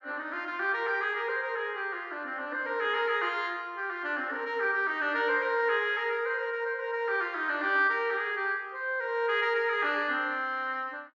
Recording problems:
low-pass filter; nothing above 7.4 kHz

